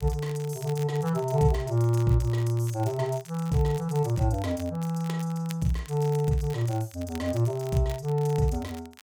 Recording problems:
crackling; vinyl, SNR 21 dB

